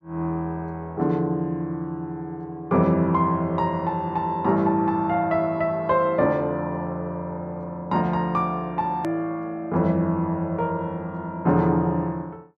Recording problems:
edit click; at 9 s

